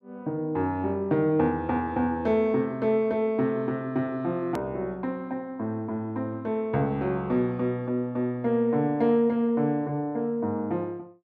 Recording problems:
edit click; at 4.5 s

